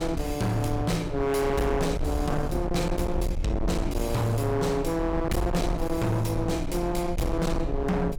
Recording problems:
distorted audio; hard clipping, signal-to-distortion ratio 7 dB
low-frequency rumble; below 110 Hz, SNR 6 dB

